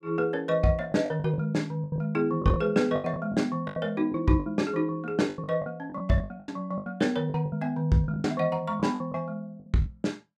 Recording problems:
lost packets; 14% of the sound replaced, filled with the last packet

